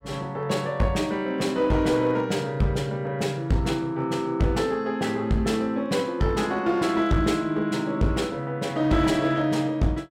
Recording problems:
distortion; hard clipping, uneven, signal-to-distortion ratio 11 dB

